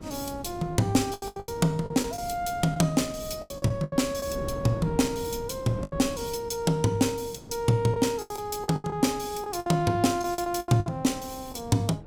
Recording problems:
wind noise; below 310 Hz, SNR 15 dB
packet loss; 10% of the sound replaced, filled with the last packet

